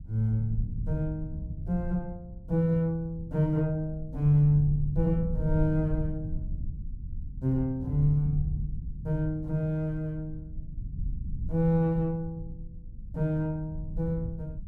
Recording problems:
low-frequency rumble; below 96 Hz, SNR 9 dB

